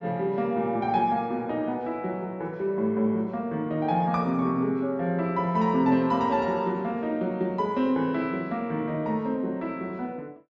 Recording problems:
treble missing; nothing above 7.4 kHz

